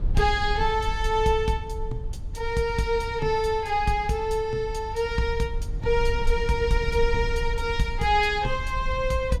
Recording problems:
rumble; below 62 Hz, SNR 8 dB

